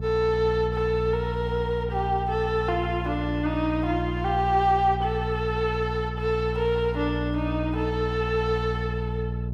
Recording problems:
hum; 60 Hz, harmonics up to 420 Hz, SNR 5 dB

